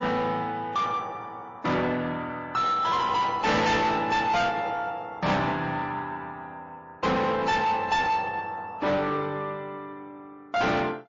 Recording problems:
lossy codec; AAC, then MP3, log-spectral distance 2 dB, nothing above 6.2 kHz
distorted audio; soft clipping, signal-to-distortion ratio 7 dB

